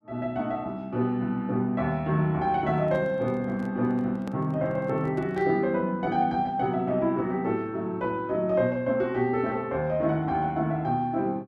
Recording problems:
microphone handling noise; from 2.5 to 5.5 s; peak -9 dB vs average level

